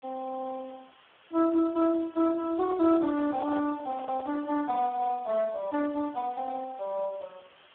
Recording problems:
telephone audio; 280 Hz to 2.2 kHz, Speex
background hiss; SNR 27 dB
microphone handling noise; from 2.5 to 4.5 s; peak -9 dB vs average level

